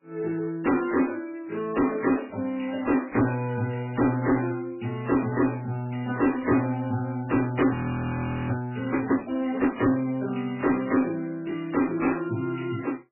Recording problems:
lossy compression; MP3, log-spectral distance 5 dB, nothing above 2.4 kHz
distorted audio; soft clipping, signal-to-distortion ratio 11 dB
frozen audio; at 7.5 s for 1 s

